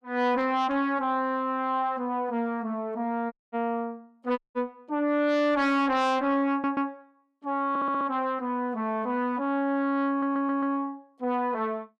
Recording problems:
distorted audio; soft clipping, signal-to-distortion ratio 11 dB
audio cutting out; at 3.5 s and at 4.5 s
stutter; at 6.5 s, at 7.5 s and at 10 s

